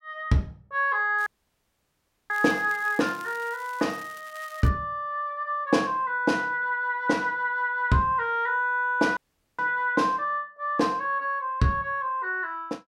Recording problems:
crackle; from 1 to 4.5 s; loose cable, SNR 23 dB
audio cutting out; at 1.5 s for 1 s and at 9 s

